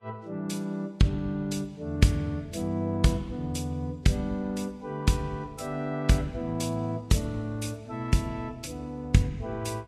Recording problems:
lossy compression; Vorbis, log-spectral distance 2 dB, nothing above 12.3 kHz

